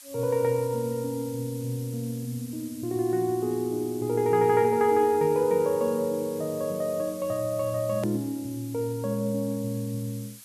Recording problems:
hiss; slope +4 dB per octave, SNR 18 dB
click at an edit; at 8 s

